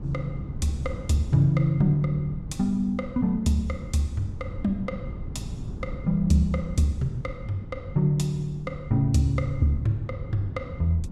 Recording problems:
wind noise; below 170 Hz, SNR 11 dB

